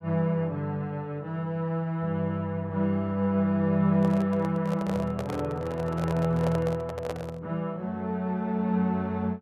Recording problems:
handling noise; from 4 to 7.5 s; peak -2 dB vs average level

